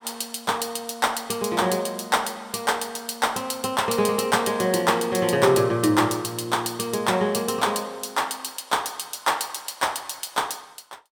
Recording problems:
none

